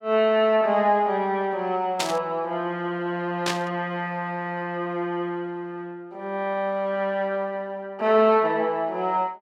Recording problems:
burst of static; at 2 s and at 3.5 s; peak +3 dB vs average level

